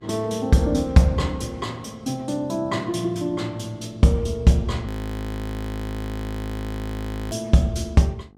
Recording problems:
mains hum; 50 Hz, harmonics up to 1.2 kHz, SNR 27 dB
audio freezing; at 5 s for 2.5 s

